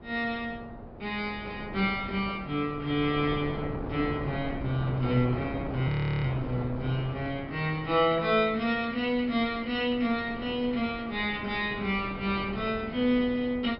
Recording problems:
treble cut off; nothing above 5.3 kHz
wind on the microphone; below 570 Hz, SNR 11 dB
audio freezing; at 6 s

